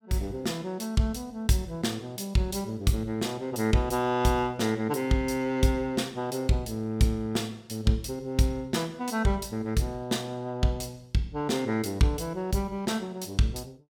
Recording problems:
none

